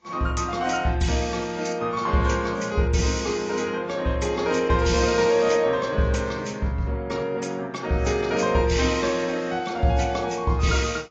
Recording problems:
lossy compression; AAC, log-spectral distance 4 dB

